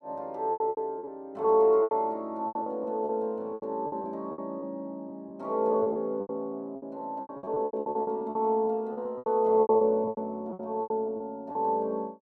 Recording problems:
lost packets; 17% of the sound replaced, filled with repeated pitch periods

